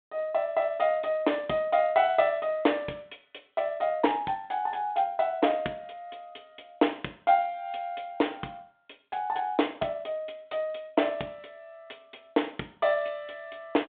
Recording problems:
phone line; 280 Hz to 3.6 kHz, G.726

